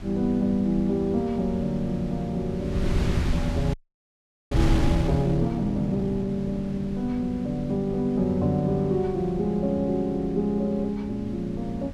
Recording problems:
wind on the microphone; below 140 Hz, SNR 8 dB
audio freezing; at 3.5 s for 1 s

